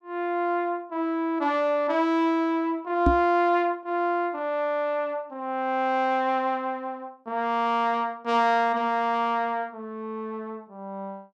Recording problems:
knock on the microphone; at 3 s; peak +6 dB vs average level

